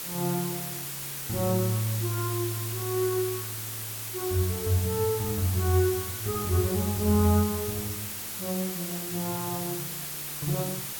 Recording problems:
hiss; slope 0 dB per octave, SNR 4 dB

